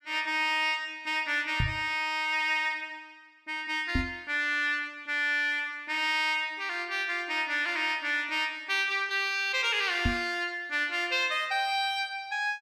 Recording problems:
microphone thump; at 1.5 s, at 4 s and at 10 s; peak +3 dB vs average level

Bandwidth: 15 kHz